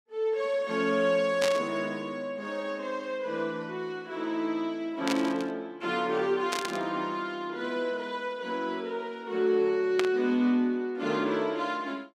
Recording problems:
static burst; 4 times, first at 1.5 s; peak +3 dB vs average level

